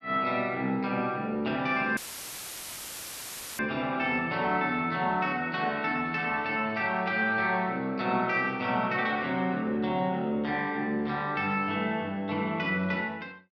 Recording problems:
audio cutting out; at 2 s for 1.5 s; filled with static

